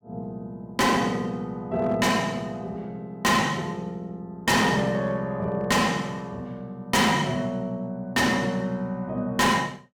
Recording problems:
distorted audio; hard clipping, uneven, signal-to-distortion ratio 6 dB

